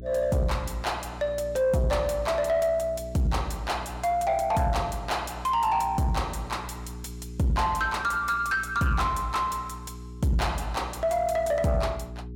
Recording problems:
distorted audio; soft clipping, signal-to-distortion ratio 10 dB
electrical hum; 60 Hz, harmonics up to 420 Hz, SNR 14 dB

